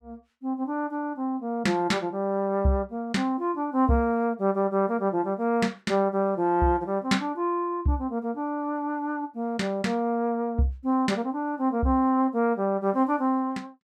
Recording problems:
none

